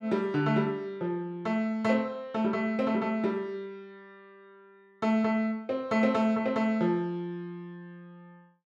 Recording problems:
none

